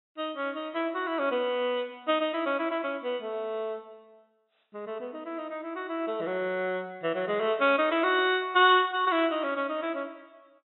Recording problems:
treble cut off; nothing above 3.9 kHz

